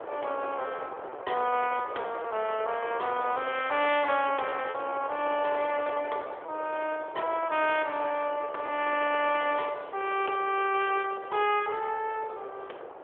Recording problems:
telephone audio; 340 Hz to 3.4 kHz, AMR-NB
wind noise; below 920 Hz, SNR 12 dB
packet loss; 15% of the sound replaced, filled with repeated pitch periods

